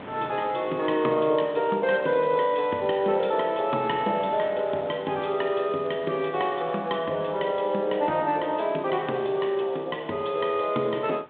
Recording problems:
telephone audio; 170 Hz to 3.7 kHz, G.726
wind noise; below 1.3 kHz, SNR 21 dB

